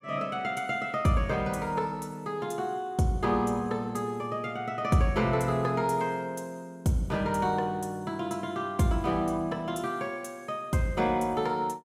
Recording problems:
none

